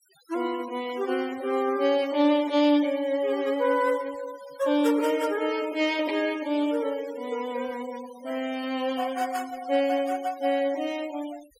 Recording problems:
noise reduction artefacts; signal-to-artefact ratio 19 dB

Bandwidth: 16 kHz